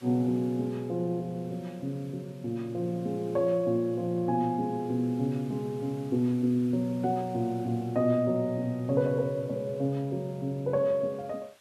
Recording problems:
background hiss; SNR 27 dB

